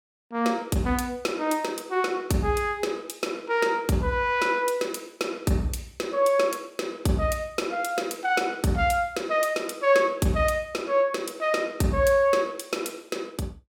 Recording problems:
none

